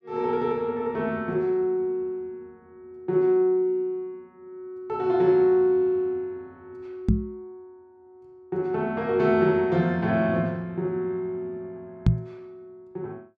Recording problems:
knock on the microphone; at 7 s and at 12 s; peak +8 dB vs average level

